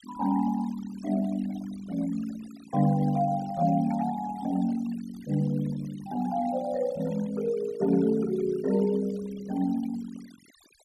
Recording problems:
denoising artefacts; signal-to-artefact ratio 20 dB

